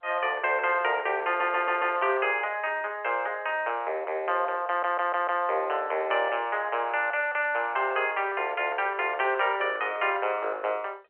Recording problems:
telephone audio; 340 Hz to 3.2 kHz, G.711
stutter; at 1.5 s and at 4.5 s

